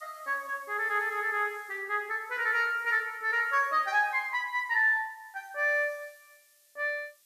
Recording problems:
hiss; SNR 29 dB

